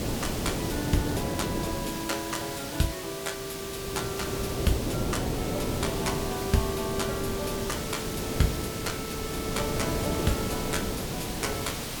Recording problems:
hiss; slope -1 dB per octave, SNR 3 dB
wind on the microphone; below 460 Hz, SNR 0 dB

